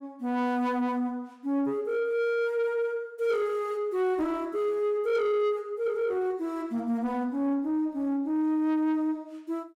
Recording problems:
distorted audio; soft clipping, signal-to-distortion ratio 12 dB

